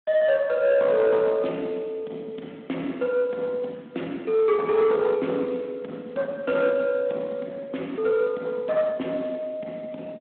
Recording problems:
phone line; 220 Hz to 3.6 kHz, Speex
distortion; soft clipping, signal-to-distortion ratio 13 dB

